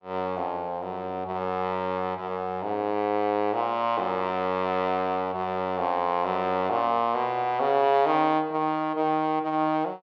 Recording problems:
none

